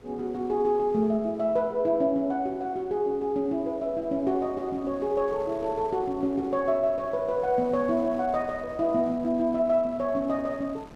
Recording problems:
wind on the microphone; below 850 Hz, SNR 23 dB

